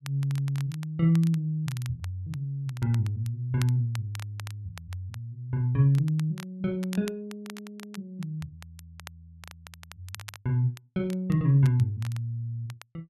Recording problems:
crackle; vinyl, SNR 20 dB

